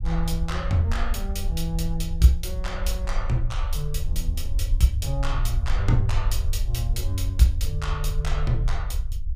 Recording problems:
rumble; below 60 Hz, SNR 2 dB

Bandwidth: 15.5 kHz